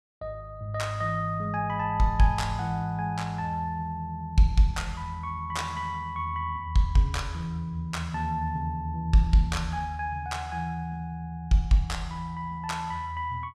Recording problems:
none

